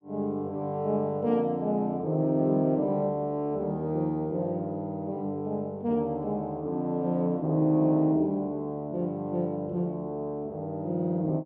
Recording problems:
none

